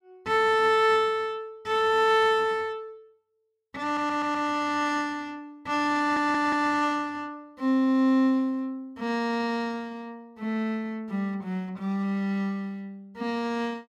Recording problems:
audio stuttering; at 4 s and at 6 s

